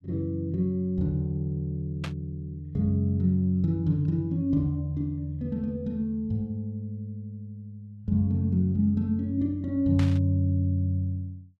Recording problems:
burst of static; at 2 s and at 10 s; peak -6 dB vs average level

